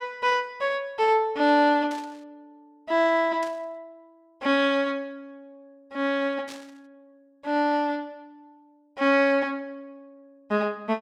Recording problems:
static burst; at 2 s, at 3.5 s and at 6.5 s; peak -12 dB vs average level

